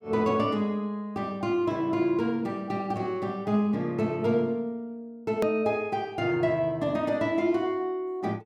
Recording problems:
hard cut with a click; at 5.5 s

